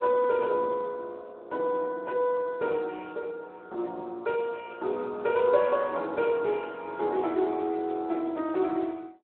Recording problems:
phone line; 260 Hz to 2.8 kHz, Speex

